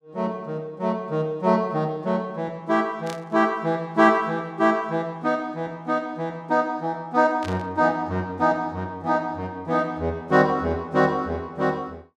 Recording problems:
burst of static; at 3 s and at 7.5 s; peak -9 dB vs average level

